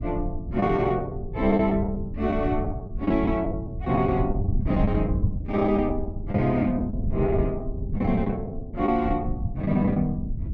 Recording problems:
low-frequency rumble; below 120 Hz, SNR 6 dB
lost packets; 11% of the sound replaced, filled with the last packet

